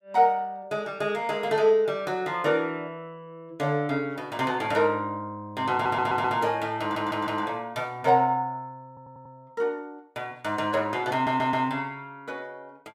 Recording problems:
stutter; 4 times, first at 5.5 s

